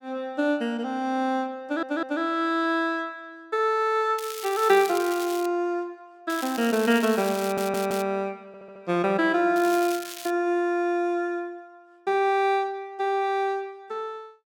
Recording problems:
stutter; at 1.5 s, at 7.5 s and at 8.5 s
crackle; from 4 to 5.5 s, from 6.5 to 8 s and at 9.5 s; loose cable, SNR 13 dB

